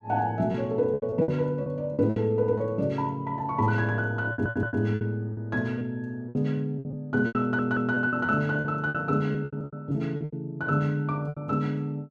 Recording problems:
packet loss; 12% of the sound replaced, filled with repeated pitch periods
audio stuttering; at 4.5 s and at 7.5 s

